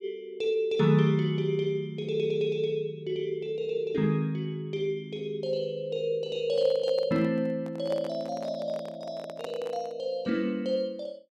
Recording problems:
microphone handling noise; from 6.5 to 10 s; peak -6 dB vs average level

